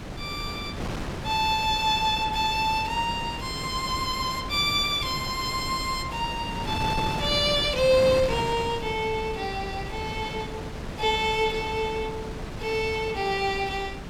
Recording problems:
wind noise; below 780 Hz, SNR 9 dB

